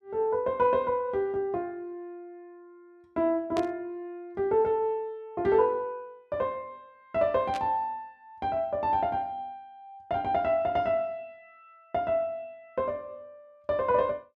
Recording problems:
burst of static; at 3.5 s and at 7.5 s; peak -7 dB vs average level

